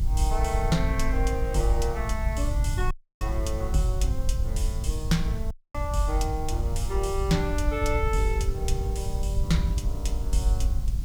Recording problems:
background hiss; SNR 20 dB
rumble; below 70 Hz, SNR -1 dB
dropout; at 3 s and at 5.5 s

